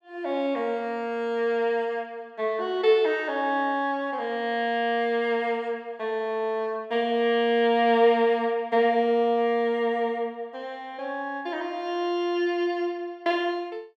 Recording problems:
none

